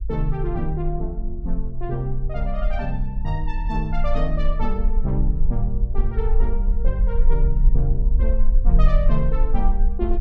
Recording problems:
rumble; below 42 Hz, strongest tone 22 Hz, SNR -4 dB

